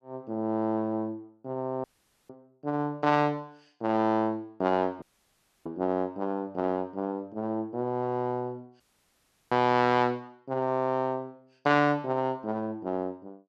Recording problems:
dropout; at 2 s, at 5 s for 0.5 s and at 9 s for 0.5 s

